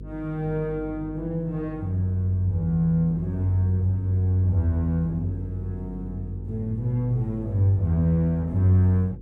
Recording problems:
electrical hum; 50 Hz, harmonics up to 500 Hz, SNR 15 dB

